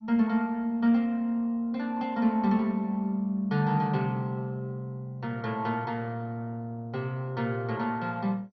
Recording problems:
lossy compression; MP2, log-spectral distance 2 dB, nothing above 6 kHz

